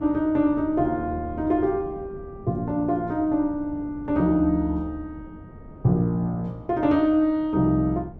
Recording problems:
wind noise; below 290 Hz, SNR 19 dB

